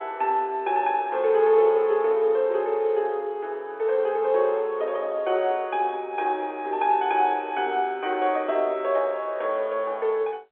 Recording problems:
telephone audio; 320 Hz to 3.6 kHz, G.711

